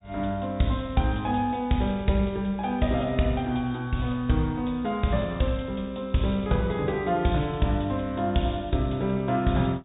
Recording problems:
treble cut off; nothing above 4 kHz

